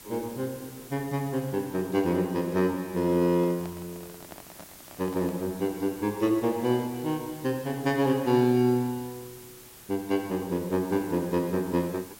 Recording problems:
hiss; slope -2 dB per octave, SNR 19 dB
handling noise; from 3 to 5.5 s; peak -12 dB vs average level

